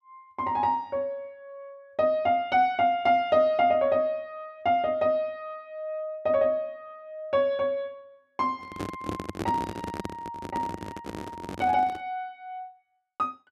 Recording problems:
handling noise; from 8.5 to 12 s; peak -1 dB vs average level

